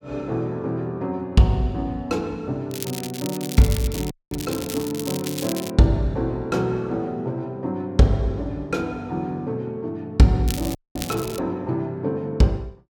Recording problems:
crackling; from 2.5 to 5.5 s and at 10 s; loose cable, SNR 10 dB
audio freezing; at 4 s and at 11 s

